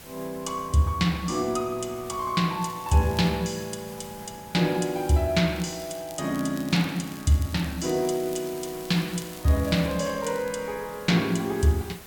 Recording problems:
background hiss; slope -1 dB per octave, SNR 19 dB
wind on the microphone; below 960 Hz, SNR 25 dB
crackling; at 2.5 s and from 5.5 to 10 s; loose cable, SNR 21 dB

